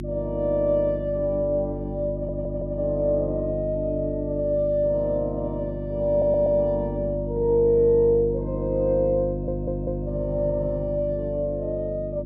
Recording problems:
hum; 50 Hz, harmonics up to 350 Hz, SNR 7 dB
audio stuttering; at 2 s, at 6 s and at 9.5 s

